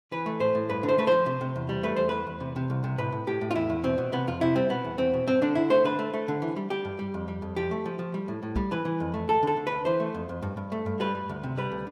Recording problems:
microphone bump; at 8.5 s; peak 0 dB vs average level

